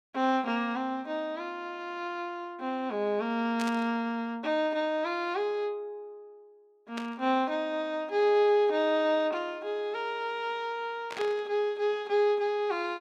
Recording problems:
burst of static; at 3.5 s, at 7 s and at 11 s; peak -5 dB vs average level

